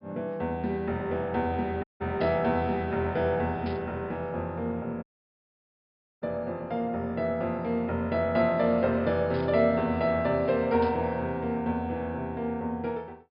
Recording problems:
low-pass filter; nothing above 5.5 kHz
audio cutting out; at 2 s and at 5 s for 1 s
burst of static; 4 times, first at 2 s; peak -11 dB vs average level

